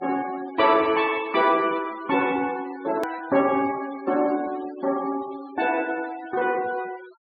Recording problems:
low-pass filter; nothing above 4.6 kHz
denoising artefacts; signal-to-artefact ratio 20 dB
hard cut with a click; at 3 s

